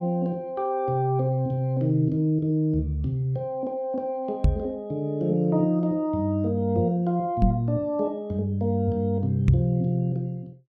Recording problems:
microphone thump; at 4.5 s, at 7.5 s and at 9.5 s; peak +8 dB vs average level

